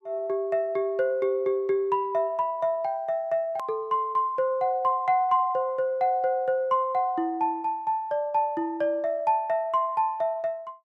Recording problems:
edit click; at 3.5 s

